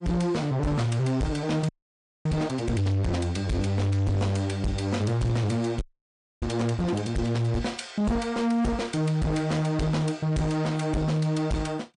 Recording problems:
lossy codec; MP3, log-spectral distance 2 dB, nothing above 8.7 kHz
distortion; soft clipping, signal-to-distortion ratio 7 dB
frozen audio; at 1.5 s for 0.5 s and at 6 s for 0.5 s

